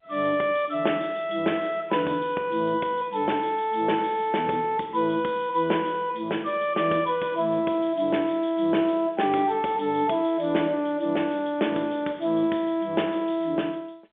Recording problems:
telephone audio; 240 Hz to 3.6 kHz, G.711

